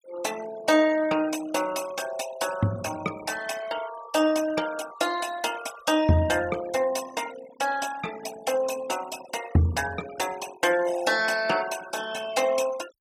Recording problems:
denoising artefacts; signal-to-artefact ratio 14 dB

